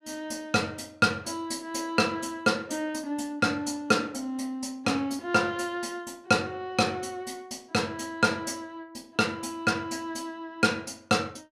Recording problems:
none

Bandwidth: 14.5 kHz